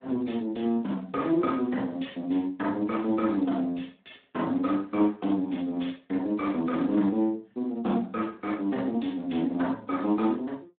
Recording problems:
phone line; 170 Hz to 3.7 kHz, Speex

